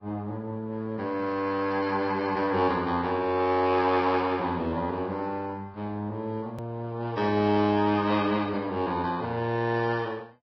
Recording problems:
lossy codec; Vorbis, log-spectral distance 2 dB, nothing above 5 kHz
edit click; at 6.5 s

